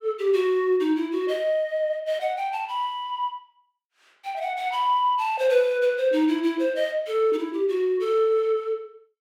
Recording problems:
none

